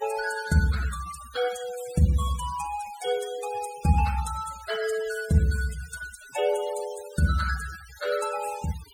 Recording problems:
denoising artefacts; signal-to-artefact ratio 14 dB

